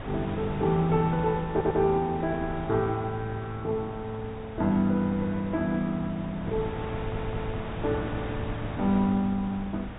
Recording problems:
treble missing; nothing above 4 kHz
wind noise; below 750 Hz, SNR 10 dB
stutter; at 1.5 s and at 7 s

